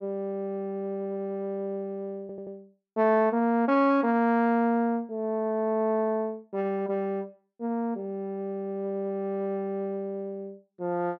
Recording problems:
audio stuttering; at 2 s

